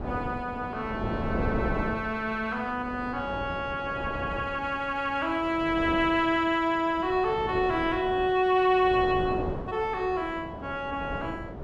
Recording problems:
wind on the microphone; below 550 Hz, SNR 9 dB

